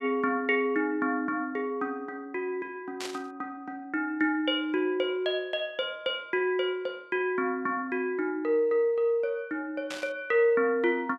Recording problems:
static burst; at 3 s and at 10 s; peak -4 dB vs average level

